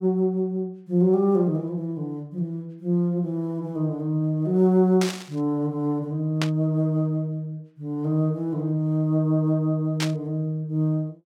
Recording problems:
burst of static; at 5 s, at 6.5 s and at 10 s; peak 0 dB vs average level

